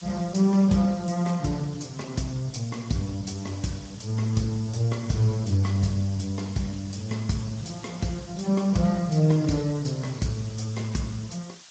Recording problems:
lossy compression; Speex, log-spectral distance 7 dB, nothing above 7.6 kHz
hiss; slope +3 dB per octave, SNR 20 dB

